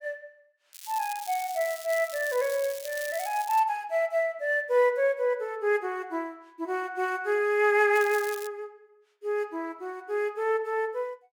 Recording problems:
crackling; from 0.5 to 3.5 s and at 8 s; loose cable, SNR 14 dB

